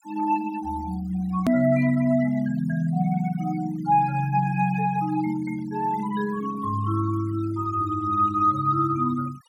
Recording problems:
noise reduction artefacts; signal-to-artefact ratio 21 dB
hard cut with a click; at 1.5 s

